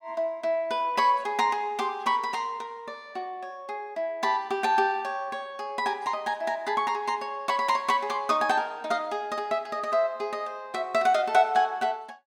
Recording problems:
none

